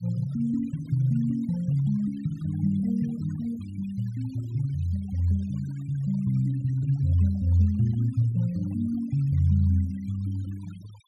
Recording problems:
noise reduction artefacts; signal-to-artefact ratio 27 dB

